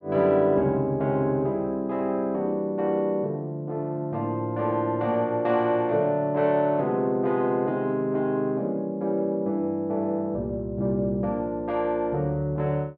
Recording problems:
none

